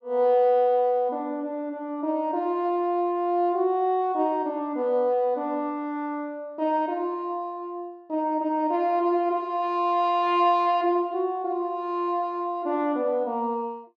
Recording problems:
none

